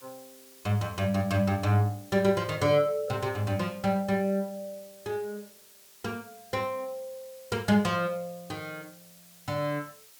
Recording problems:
hiss; slope +1 dB per octave, SNR 23 dB

